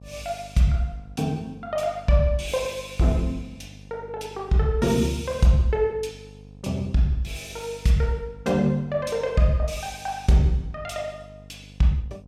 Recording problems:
mains hum; 50 Hz, harmonics up to 800 Hz, SNR 21 dB

